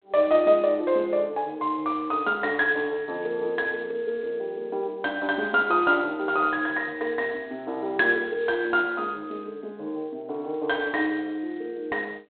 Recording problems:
telephone audio; 280 Hz to 3.8 kHz, G.726

